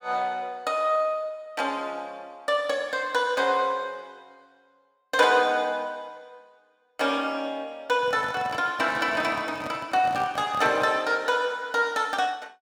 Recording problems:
handling noise; from 8 to 11 s; peak -6 dB vs average level

